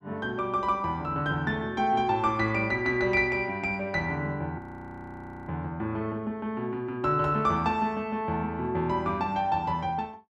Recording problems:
frozen audio; at 4.5 s for 1 s

